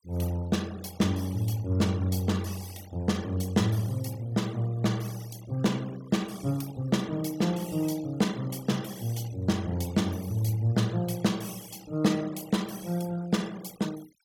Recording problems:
denoising artefacts; signal-to-artefact ratio 20 dB

